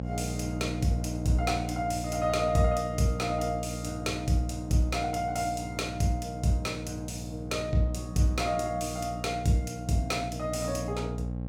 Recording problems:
electrical hum; 60 Hz, harmonics up to 840 Hz, SNR 7 dB

